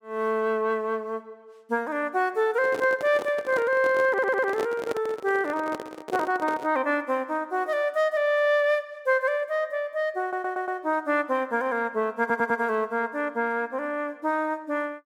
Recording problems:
microphone handling noise; from 2.5 to 7 s; peak -1 dB vs average level
stutter; at 4 s, at 10 s and at 12 s

